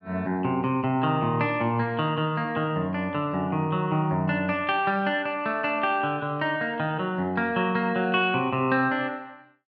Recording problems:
none

